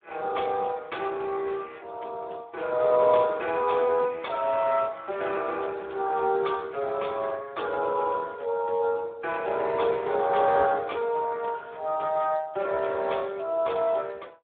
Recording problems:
phone line; 340 Hz to 3.5 kHz, Speex

